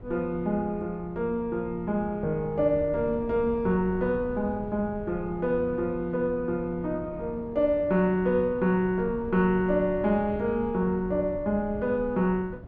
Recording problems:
wind noise; below 210 Hz, SNR 15 dB

